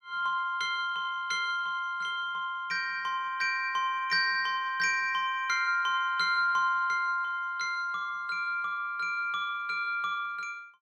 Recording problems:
none

